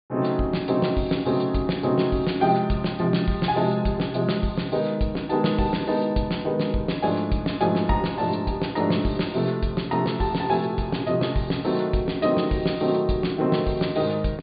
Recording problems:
treble missing; nothing above 4.8 kHz

